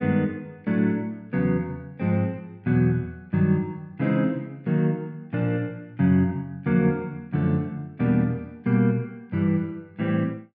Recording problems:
none

